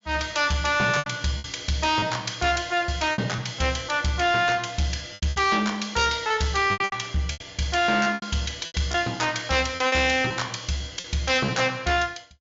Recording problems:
treble cut off; nothing above 7.3 kHz
distortion; hard clipping, signal-to-distortion ratio 8 dB
packet loss; 9% of the sound replaced, filled with repeated pitch periods

